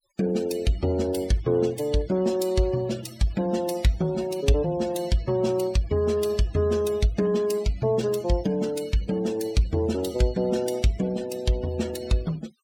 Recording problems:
noise reduction artefacts; signal-to-artefact ratio 19 dB

